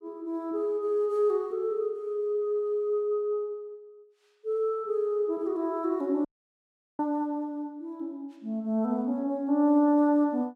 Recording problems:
dropout; at 6.5 s for 0.5 s

